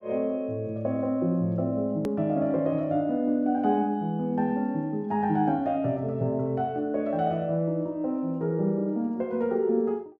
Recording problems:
hard cut with a click; at 2 s

